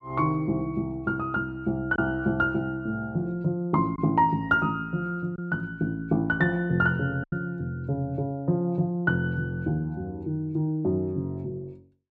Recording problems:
packet loss; 1.2% of the sound replaced, filled with silence

